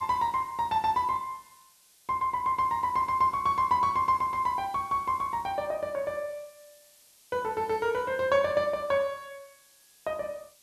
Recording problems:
background hiss; SNR 27 dB

